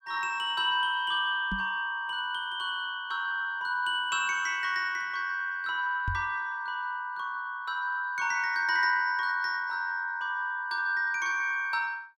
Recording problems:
microphone thump; at 1.5 s and at 6 s; peak -1 dB vs average level

